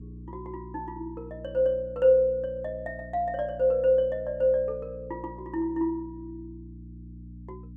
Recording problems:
hum; 60 Hz, harmonics up to 300 Hz, SNR 18 dB

